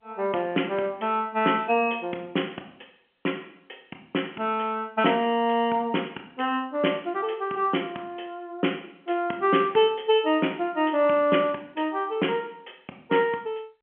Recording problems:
telephone audio; 220 Hz to 3.3 kHz, G.711

